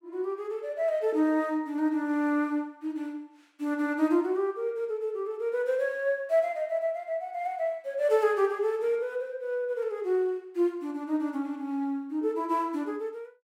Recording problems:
none

